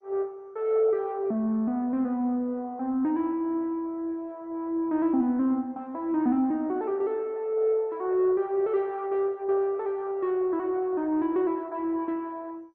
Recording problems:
lossy codec; MP2, log-spectral distance 2 dB

